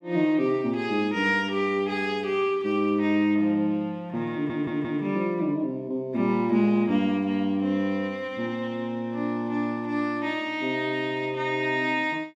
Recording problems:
audio stuttering; at 4.5 s

